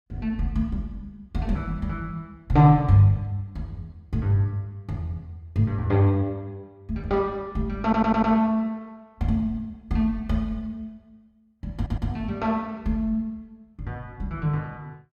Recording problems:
audio stuttering; at 8 s and at 12 s

